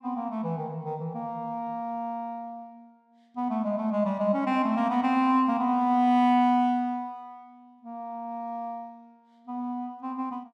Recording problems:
none

